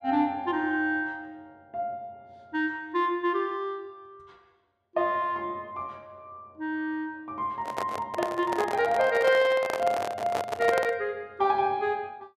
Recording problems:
microphone handling noise; from 7.5 to 11 s; peak +2 dB vs average level

